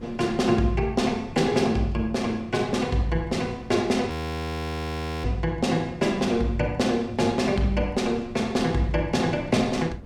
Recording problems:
wind noise; below 260 Hz, SNR 18 dB
audio freezing; at 4 s for 1 s

